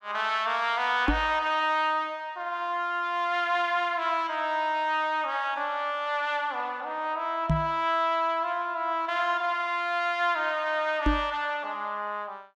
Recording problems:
microphone bump; at 1 s, at 7.5 s and at 11 s; peak +5 dB vs average level

